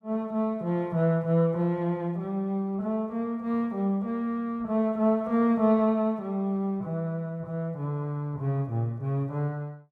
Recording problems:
none

